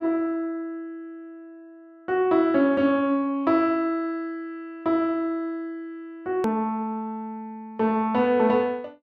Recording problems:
hard cut with a click; at 6.5 s

